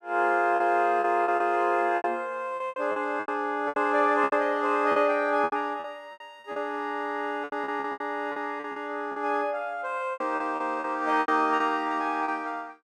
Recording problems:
packet loss; 13% of the sound replaced, filled with repeated pitch periods

